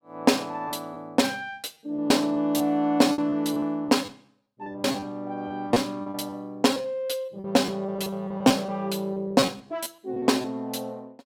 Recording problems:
packet loss; 10% of the sound replaced, filled with repeated pitch periods

